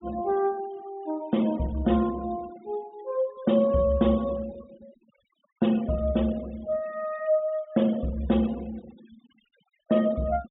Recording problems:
low-pass filter; nothing above 4 kHz
noise reduction artefacts; signal-to-artefact ratio 23 dB

